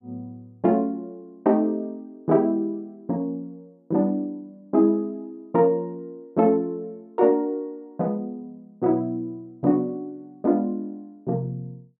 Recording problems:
none

